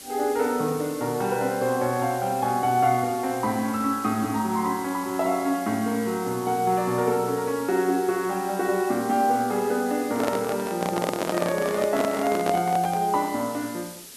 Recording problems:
hiss; SNR 15 dB
microphone handling noise; from 10 to 13 s; peak +1 dB vs average level

